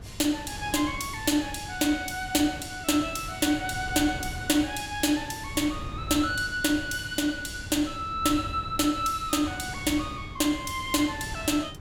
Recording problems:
wind on the microphone; below 180 Hz, SNR 14 dB

